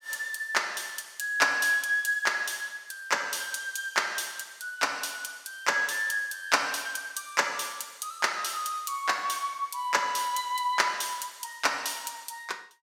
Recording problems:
none

